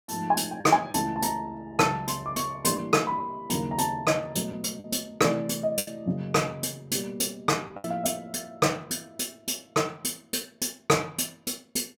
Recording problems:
packet loss; 3% of the sound replaced, filled with the last packet

